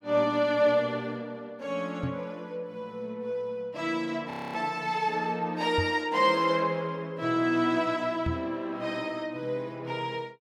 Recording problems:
knock on the microphone; at 2 s, at 6 s and at 8.5 s; peak +1 dB vs average level
frozen audio; at 4.5 s

